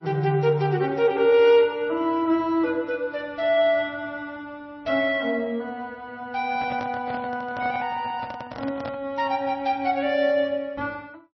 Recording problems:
codec artefacts; MP3, log-spectral distance 2 dB, nothing above 5.7 kHz
microphone handling noise; from 6.5 to 9 s; peak -8 dB vs average level

